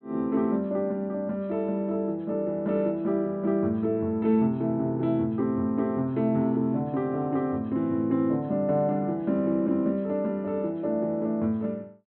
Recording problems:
treble cut off; nothing above 4.1 kHz

